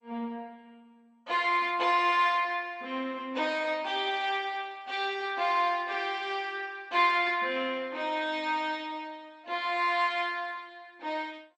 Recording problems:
lossy compression; MP2, log-spectral distance 3 dB, nothing above 7.8 kHz

